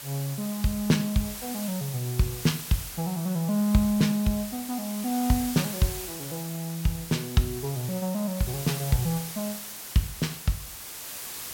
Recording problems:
hiss; slope 0 dB per octave, SNR 8 dB

